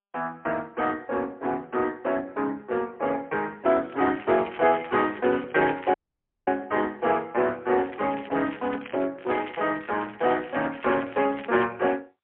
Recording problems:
telephone audio; 220 Hz to 3.2 kHz, AMR-NB, then MP3
crackle; from 4 to 6.5 s, from 8 to 9 s and from 9 to 12 s; loose cable, SNR 20 dB
dropout; at 6 s for 0.5 s

